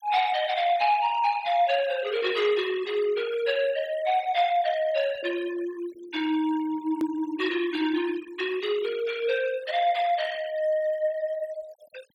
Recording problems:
noise reduction artefacts; signal-to-artefact ratio 18 dB
hard cut with a click; at 7 s

